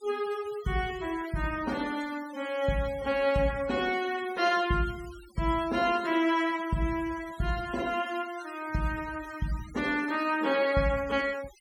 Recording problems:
denoising artefacts; signal-to-artefact ratio 18 dB

